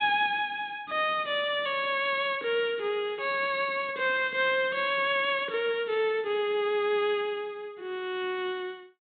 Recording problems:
treble missing; nothing above 4 kHz

